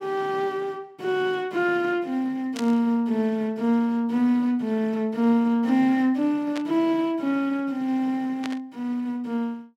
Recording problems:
static burst; at 2.5 s, at 6.5 s and at 8.5 s; peak -6 dB vs average level

